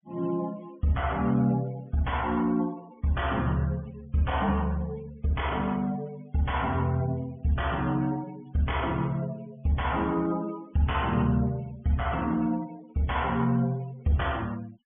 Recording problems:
low-pass filter; nothing above 3.4 kHz
noise reduction artefacts; signal-to-artefact ratio 24 dB

